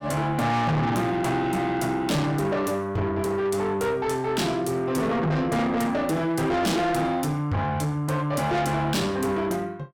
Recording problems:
distorted audio; soft clipping, signal-to-distortion ratio 7 dB

